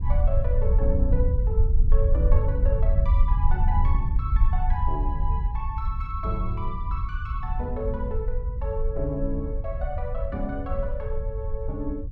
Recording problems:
low-frequency rumble; below 66 Hz, SNR -6 dB

